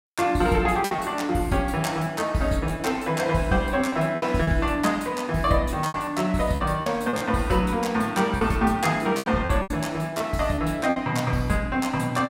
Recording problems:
lost packets; 7% of the sound replaced, filled with repeated pitch periods

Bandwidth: 16 kHz